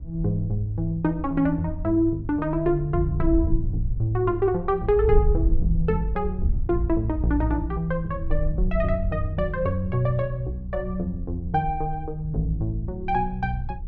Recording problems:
wind on the microphone; below 64 Hz, SNR 6 dB

